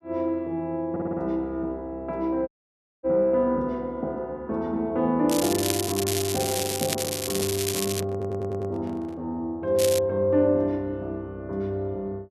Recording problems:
stutter; at 1 s and at 8 s
dropout; at 2.5 s for 0.5 s
crackling; from 5.5 to 8 s and at 10 s; loose cable, SNR 3 dB
microphone handling noise; from 6.5 to 9 s; peak -7 dB vs average level

